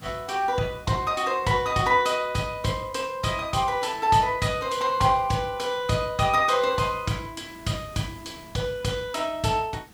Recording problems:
background hiss; SNR 25 dB

